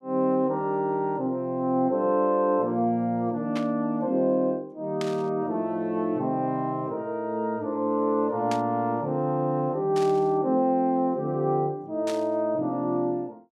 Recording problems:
burst of static; 5 times, first at 3.5 s; peak -6 dB vs average level

